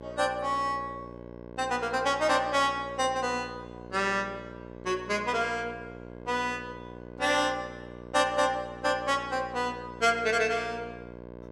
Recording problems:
electrical hum; 60 Hz, harmonics up to 2.1 kHz, SNR 15 dB

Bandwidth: 14.5 kHz